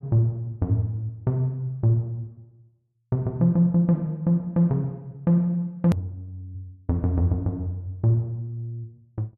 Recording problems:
hard cut with a click; at 6 s

